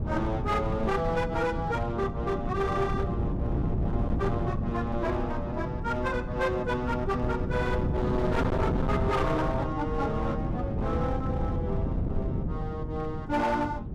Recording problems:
distortion; hard clipping, signal-to-distortion ratio 11 dB
wind on the microphone; below 230 Hz, SNR 1 dB

